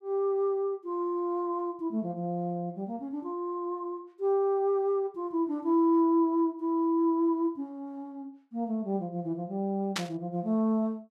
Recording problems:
static burst; at 10 s; peak +3 dB vs average level

